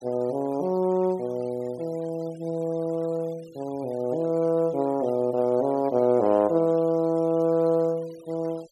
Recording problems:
noise reduction artefacts; signal-to-artefact ratio 26 dB

